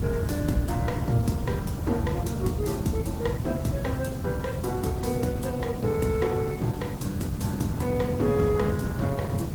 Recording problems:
codec artefacts; Opus, log-spectral distance 3 dB, nothing above 19 kHz
hiss; slope -3 dB per octave, SNR 17 dB
rumble; below 190 Hz, SNR 1 dB

